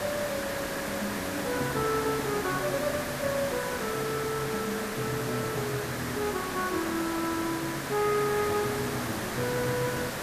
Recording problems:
hiss; SNR 2 dB

